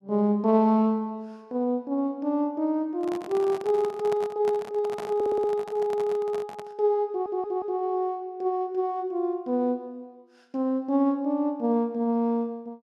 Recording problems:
microphone handling noise; from 3 to 7 s; peak -6 dB vs average level
audio stuttering; at 5 s and at 7 s

